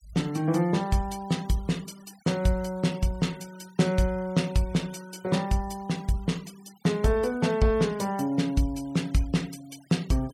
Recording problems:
denoising artefacts; signal-to-artefact ratio 23 dB

